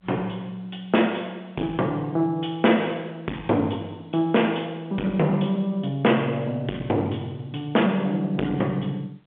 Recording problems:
phone line; 240 Hz to 3.5 kHz, G.711
distortion; soft clipping, signal-to-distortion ratio 10 dB

